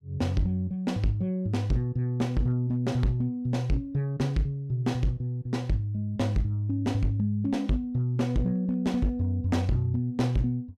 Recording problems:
distortion; hard clipping, uneven, signal-to-distortion ratio 11 dB

